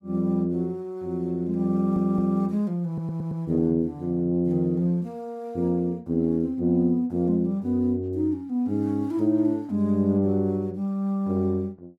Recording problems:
audio stuttering; at 1.5 s and at 3 s

